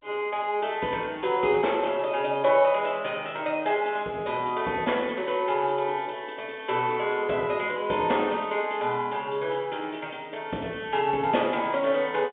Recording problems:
phone line; 190 Hz to 3.7 kHz, G.711

